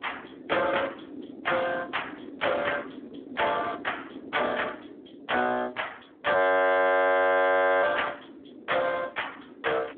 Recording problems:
phone line; 240 Hz to 3.4 kHz, Speex
wind noise; below 400 Hz, SNR 18 dB
audio freezing; at 6.5 s for 1.5 s

